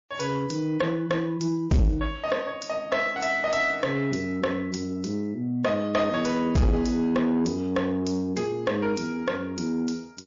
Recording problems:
lossy compression; MP3, log-spectral distance 3 dB, nothing above 6.9 kHz
distortion; soft clipping, signal-to-distortion ratio 6 dB

